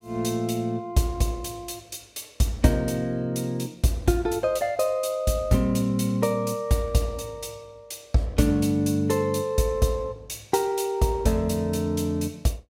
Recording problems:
none

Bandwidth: 16 kHz